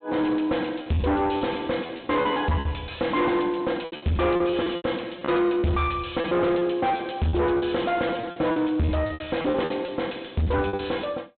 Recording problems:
low-pass filter; nothing above 4 kHz
distortion; soft clipping, signal-to-distortion ratio 6 dB
packet loss; 12% of the sound replaced, filled with repeated pitch periods

